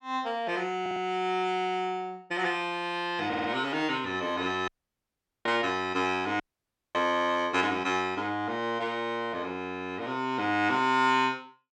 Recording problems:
audio stuttering; at 1 s and at 3.5 s
dropout; at 4.5 s for 1 s and at 6.5 s for 0.5 s

